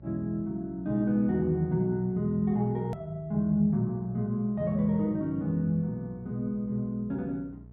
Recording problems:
mains hum; 60 Hz, harmonics up to 660 Hz, SNR 23 dB
edit click; at 3 s

